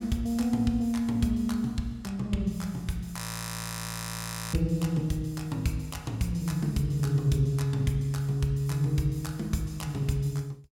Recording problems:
audio freezing; at 3 s for 1.5 s

